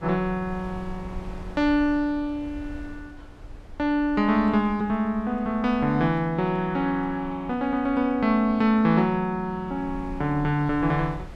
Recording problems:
wind on the microphone; below 88 Hz, SNR 19 dB

